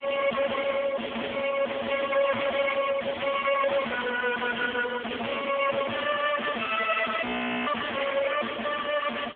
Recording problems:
telephone audio; 300 Hz to 2.6 kHz, AMR-NB
distortion; soft clipping, signal-to-distortion ratio 5 dB
audio freezing; at 7.5 s

